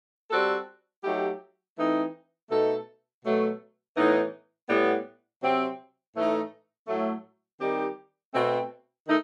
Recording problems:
none

